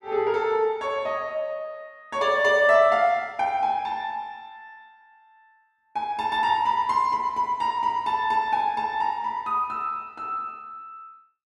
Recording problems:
none

